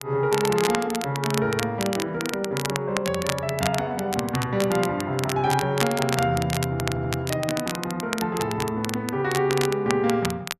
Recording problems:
crackling; vinyl, SNR 7 dB
stutter; at 6.5 s

